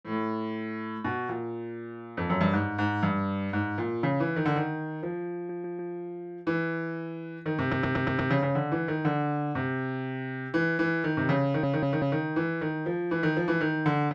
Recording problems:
audio stuttering; at 5.5 s, at 7.5 s and at 11 s

